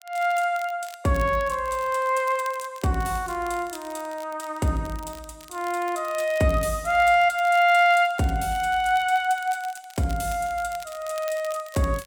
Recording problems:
crackle; vinyl, SNR 22 dB

